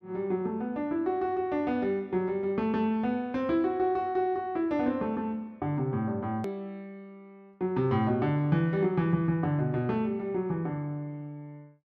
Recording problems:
hard cut with a click; at 6.5 s

